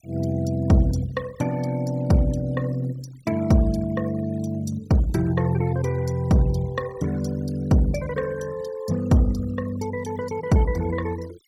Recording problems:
noise reduction artefacts; signal-to-artefact ratio 21 dB

